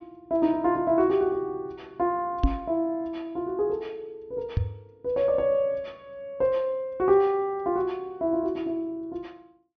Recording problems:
low-pass filter; nothing above 6.2 kHz
microphone bump; at 2.5 s and at 4.5 s; peak +7 dB vs average level

